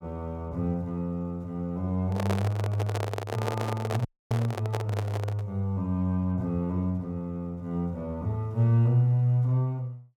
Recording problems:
microphone handling noise; from 2 to 5.5 s; peak +2 dB vs average level
audio cutting out; at 4 s

